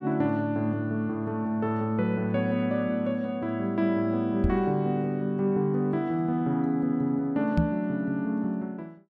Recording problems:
knock on the microphone; at 4.5 s and at 7.5 s; peak +7 dB vs average level

